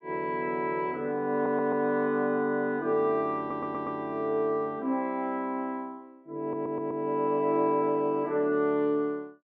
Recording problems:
audio stuttering; at 1.5 s, at 3.5 s and at 6.5 s

